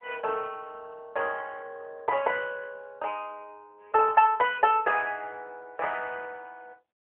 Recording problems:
phone line; 340 Hz to 3.1 kHz, AMR-NB

